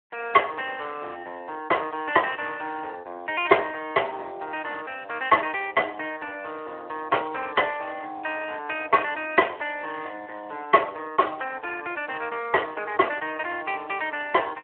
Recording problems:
telephone audio; 340 Hz to 3.1 kHz, Speex

